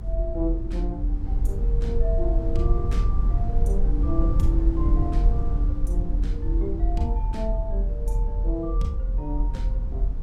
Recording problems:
low-frequency rumble; below 52 Hz, strongest tone 42 Hz, SNR -7 dB

